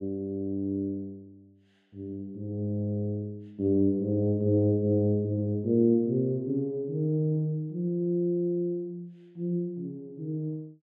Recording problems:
none

